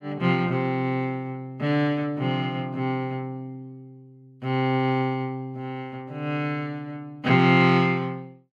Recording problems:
none

